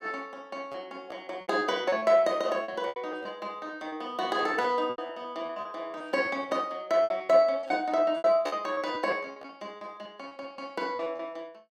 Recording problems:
packet loss; 13% of the sound replaced, filled with repeated pitch periods

